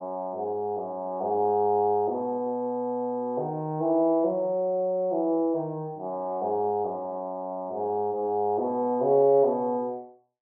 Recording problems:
none

